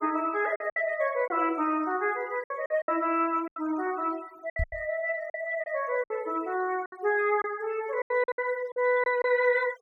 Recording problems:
denoising artefacts; signal-to-artefact ratio 22 dB
lost packets; 10% of the sound replaced, filled with silence
microphone thump; at 4.5 s; peak +1 dB vs average level

